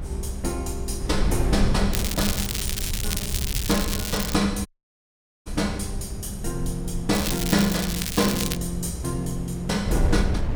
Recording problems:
rumble; below 82 Hz, SNR 10 dB
wind noise; below 110 Hz, SNR 5 dB
crackling; from 2 to 4.5 s and from 7 to 8.5 s; loose cable, SNR 2 dB
audio cutting out; at 4.5 s for 1 s

